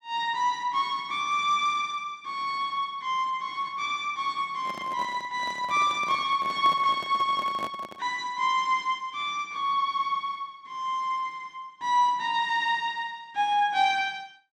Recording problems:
microphone handling noise; from 4.5 to 8 s; peak -7 dB vs average level

